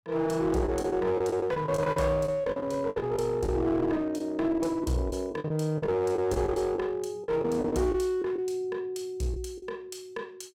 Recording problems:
distorted audio; hard clipping, uneven, signal-to-distortion ratio 10 dB
packet loss; 9% of the sound replaced, filled with the last packet

